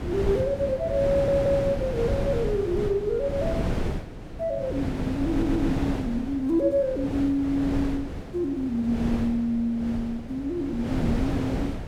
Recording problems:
wind noise; below 380 Hz, SNR 5 dB
stutter; at 1 s and at 5.5 s

